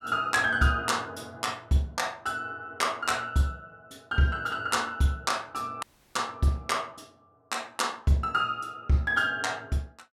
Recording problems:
audio cutting out; at 6 s

